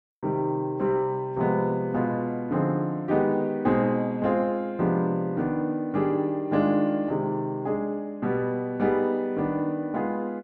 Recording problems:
none

